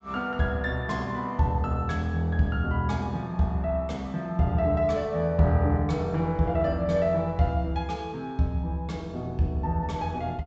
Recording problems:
treble cut off; nothing above 8 kHz

